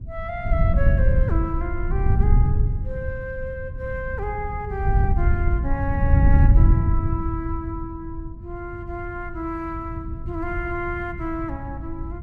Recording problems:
wind noise; below 98 Hz, SNR -7 dB

